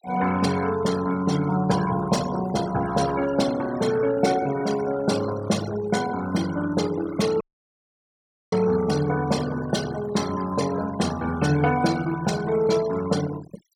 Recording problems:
denoising artefacts; signal-to-artefact ratio 14 dB
dropout; at 7.5 s for 1 s

